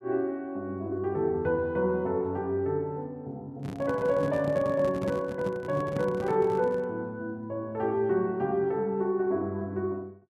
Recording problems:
handling noise; from 3.5 to 7 s; peak -1 dB vs average level

